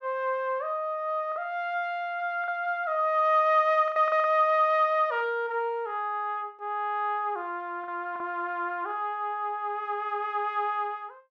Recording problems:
packet loss; 3% of the sound replaced, filled with the last packet

